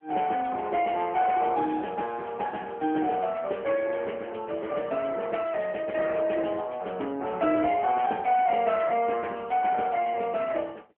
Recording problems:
telephone audio; 240 Hz to 3.2 kHz, AMR-NB

